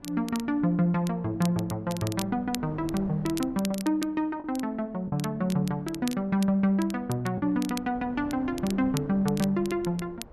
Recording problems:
wind noise; below 540 Hz, SNR 20 dB
crackle; vinyl, SNR 15 dB
packet loss; 1.2% of the sound replaced, filled with the last packet

